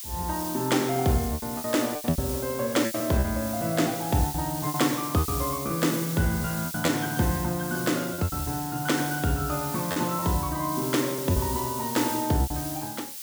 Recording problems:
hiss; SNR 7 dB
packet loss; 9% of the sound replaced, filled with repeated pitch periods

